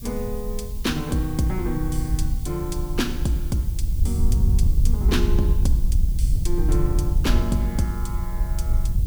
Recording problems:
hiss; slope +7 dB per octave, SNR 16 dB
wind on the microphone; below 70 Hz, SNR -2 dB

